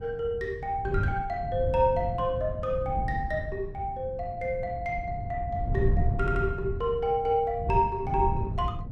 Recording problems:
wind noise; below 130 Hz, SNR 5 dB
audio stuttering; at 6 s

